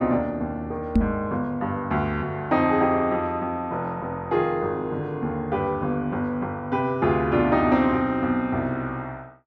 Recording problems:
knock on the microphone; at 1 s; peak +8 dB vs average level

